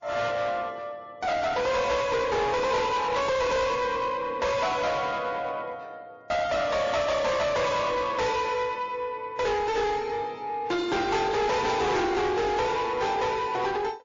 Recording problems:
lossy codec; MP3, then MP3, log-spectral distance 3 dB, nothing above 6.3 kHz
distorted audio; soft clipping, signal-to-distortion ratio 6 dB

